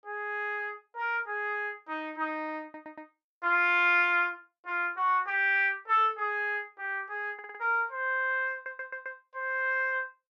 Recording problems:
audio stuttering; at 2.5 s, at 7.5 s and at 8.5 s

